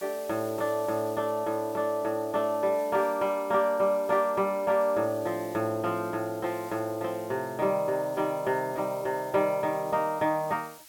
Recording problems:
hiss; slope +2 dB per octave, SNR 21 dB

